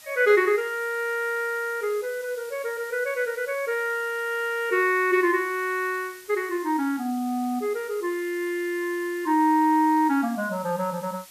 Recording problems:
background hiss; slope +2 dB per octave, SNR 20 dB

